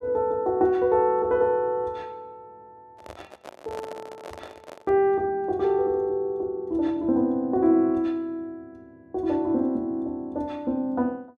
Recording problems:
microphone handling noise; from 3 to 5 s; peak -9 dB vs average level

